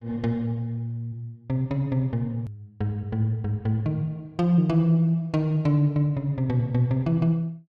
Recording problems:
edit click; at 2.5 s

